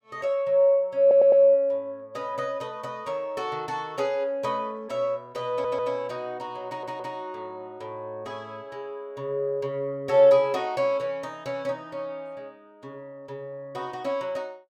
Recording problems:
audio stuttering; at 1 s, at 5.5 s and at 6.5 s

